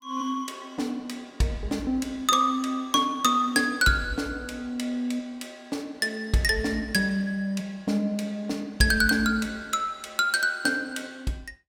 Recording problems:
none

